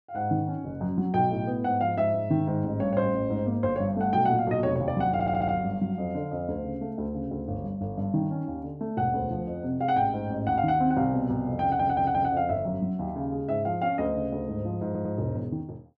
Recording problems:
audio stuttering; at 5 s, at 12 s and at 15 s

